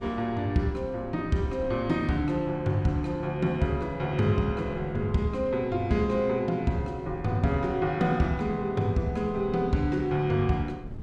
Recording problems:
wind noise; below 180 Hz, SNR 18 dB

